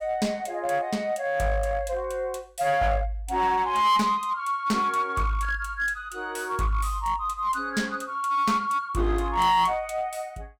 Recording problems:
distortion; hard clipping, uneven, signal-to-distortion ratio 10 dB

